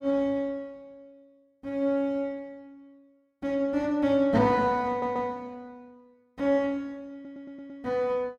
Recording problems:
audio stuttering; at 5 s and at 7 s

